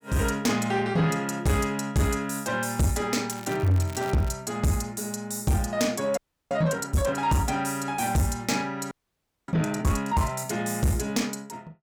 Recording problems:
distorted audio; soft clipping, signal-to-distortion ratio 10 dB
crackling; from 3.5 to 4.5 s; loose cable, SNR 18 dB
frozen audio; at 6 s and at 9 s for 0.5 s

